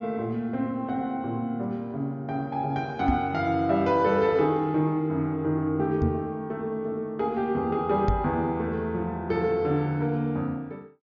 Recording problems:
treble missing; nothing above 7 kHz
microphone bump; at 3 s, at 6 s and at 8 s; peak +4 dB vs average level

